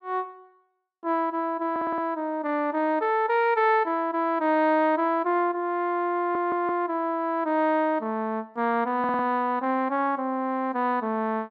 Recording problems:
audio stuttering; at 1.5 s, at 6 s and at 9 s

